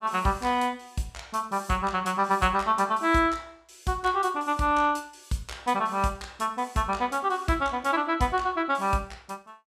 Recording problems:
none

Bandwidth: 14.5 kHz